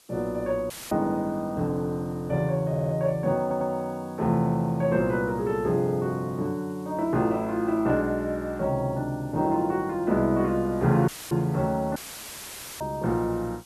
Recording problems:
background hiss; SNR 29 dB
dropout; at 0.5 s, at 11 s and at 12 s for 1 s; filled with static
stutter; at 2.5 s and at 3.5 s

